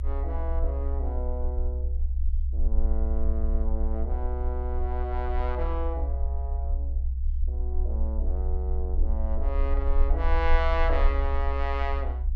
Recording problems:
low-frequency rumble; below 66 Hz, SNR -5 dB

